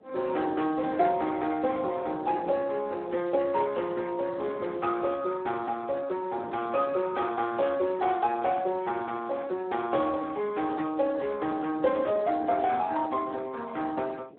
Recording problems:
telephone audio; 280 Hz to 3.5 kHz, Speex
wind noise; below 520 Hz, SNR 18 dB

